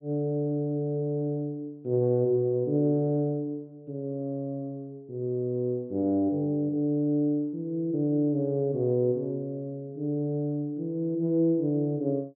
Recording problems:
low-pass filter; nothing above 4 kHz

